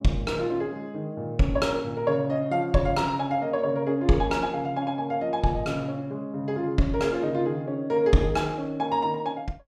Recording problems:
none

